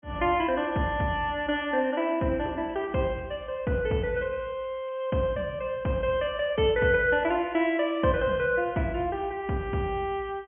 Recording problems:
low-pass filter; nothing above 3.2 kHz

